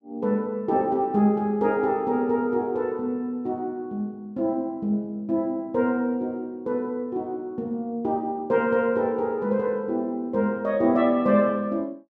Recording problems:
none

